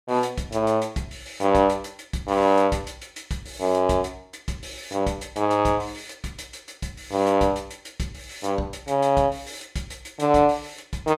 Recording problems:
none

